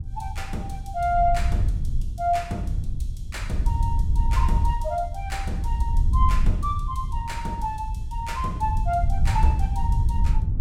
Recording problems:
wind on the microphone; below 78 Hz, SNR -2 dB

